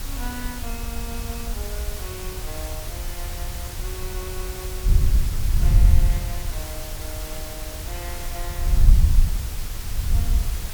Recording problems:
hiss; slope -1 dB per octave, SNR -4 dB
wind noise; below 70 Hz, SNR -14 dB

